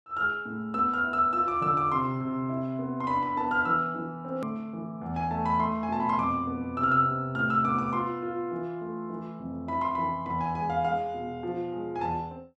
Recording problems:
edit click; at 4.5 s

